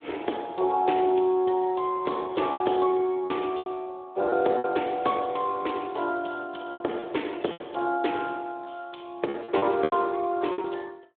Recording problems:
telephone audio; 260 Hz to 3.6 kHz, Speex
packet loss; 7% of the sound replaced, filled with repeated pitch periods

